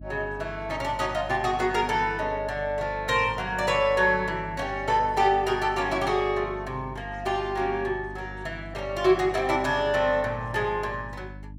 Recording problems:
hum; 50 Hz, harmonics up to 300 Hz, SNR 16 dB

